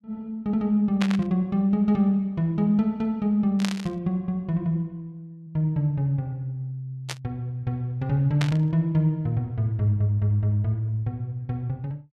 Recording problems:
burst of static; 4 times, first at 1 s; peak -1 dB vs average level

